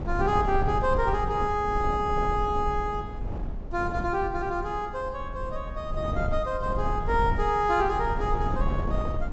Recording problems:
low-pass filter; nothing above 8 kHz
wind noise; below 140 Hz, SNR 5 dB

